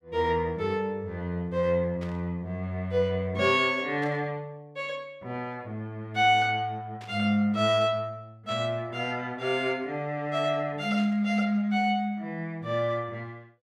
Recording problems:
static burst; 5 times, first at 2 s; peak -14 dB vs average level

